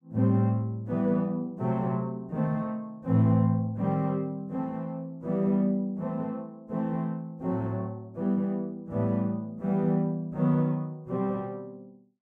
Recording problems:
none

